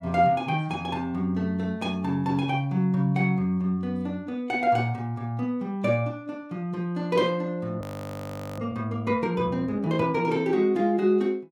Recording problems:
audio freezing; at 8 s for 1 s

